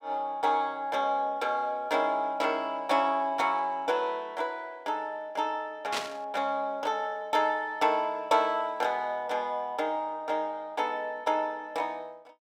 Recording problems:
burst of static; at 6 s; peak +2 dB vs average level

